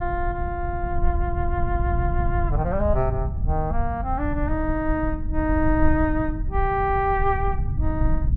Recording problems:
rumble; below 84 Hz, SNR 2 dB

